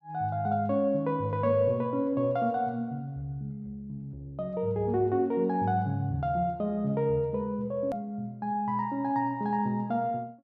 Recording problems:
edit click; at 8 s

